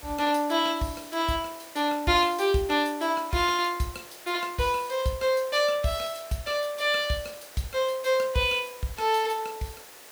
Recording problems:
hiss; slope -2 dB per octave, SNR 18 dB

